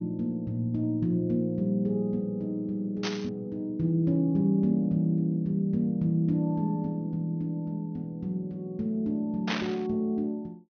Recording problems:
low-pass filter; nothing above 6.4 kHz
burst of static; at 3 s and at 9.5 s; peak +2 dB vs average level

